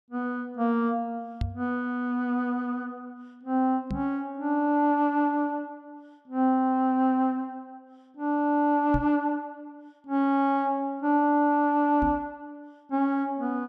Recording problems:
microphone thump; 4 times, first at 1.5 s; peak 0 dB vs average level

